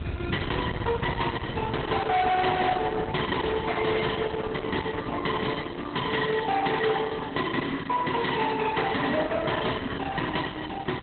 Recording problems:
lossy compression; Opus, log-spectral distance 11 dB, nothing above 3.9 kHz
distortion; hard clipping, uneven, signal-to-distortion ratio 7 dB
hiss; SNR 23 dB
wind on the microphone; below 700 Hz, SNR 11 dB

